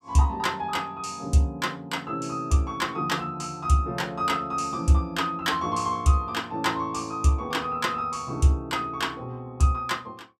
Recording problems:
none

